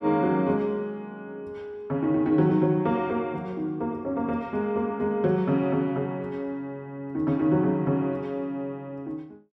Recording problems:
none

